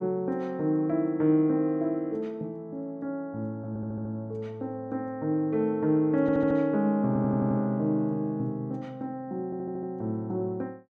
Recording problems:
stutter; 4 times, first at 3.5 s

